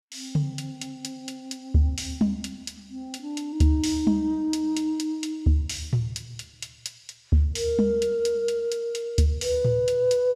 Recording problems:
none

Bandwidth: 14 kHz